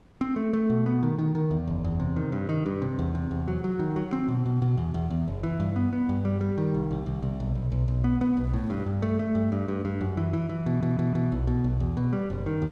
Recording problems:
wind noise; below 380 Hz, SNR 25 dB
audio stuttering; at 11 s

